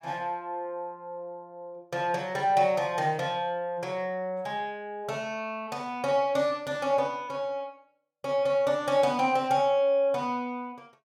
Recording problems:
none

